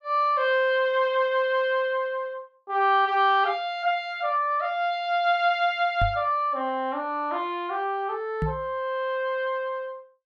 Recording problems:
knock on the microphone; at 6 s and at 8.5 s; peak 0 dB vs average level

